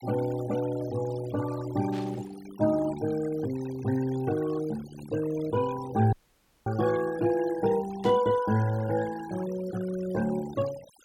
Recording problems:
noise reduction artefacts; signal-to-artefact ratio 15 dB
burst of static; at 2 s and at 8 s; peak -12 dB vs average level
dropout; at 6 s for 0.5 s

